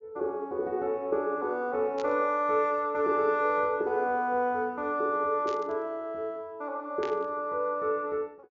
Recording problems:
low-pass filter; nothing above 7.3 kHz
burst of static; at 2 s, at 5.5 s and at 7 s; peak -9 dB vs average level

